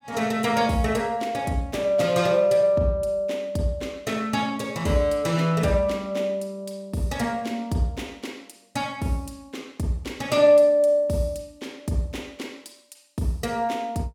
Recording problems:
none

